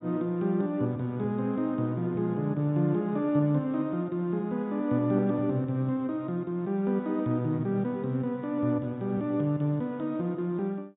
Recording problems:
treble cut off; nothing above 4 kHz

